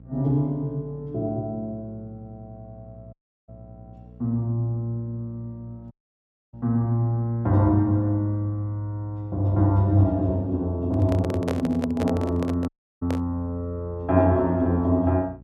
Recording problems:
hum; 60 Hz, harmonics up to 540 Hz, SNR 23 dB
audio cutting out; at 3 s, at 6 s for 0.5 s and at 13 s
handling noise; from 11 to 13 s; peak -1 dB vs average level

